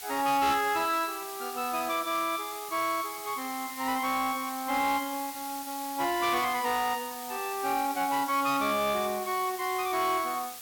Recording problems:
distortion; soft clipping, signal-to-distortion ratio 12 dB
hiss; slope +2 dB per octave, SNR 10 dB

